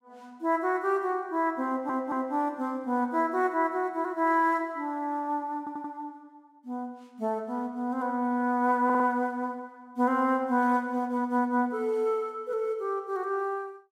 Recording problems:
audio stuttering; at 1.5 s, at 5.5 s and at 9 s

